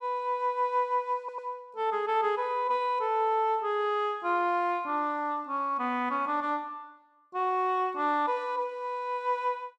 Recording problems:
audio stuttering; at 1 s

